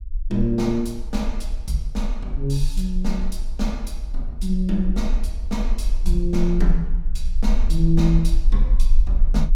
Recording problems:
rumble; below 38 Hz, strongest tone 18 Hz, SNR 1 dB

